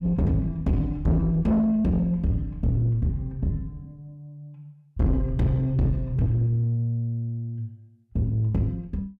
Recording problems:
distortion; soft clipping, signal-to-distortion ratio 6 dB

